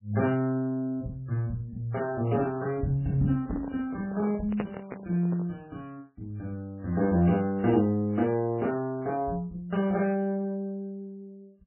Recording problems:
lossy compression; MP3, log-spectral distance 2 dB, nothing above 2.9 kHz
handling noise; from 3.5 to 5.5 s; peak 0 dB vs average level

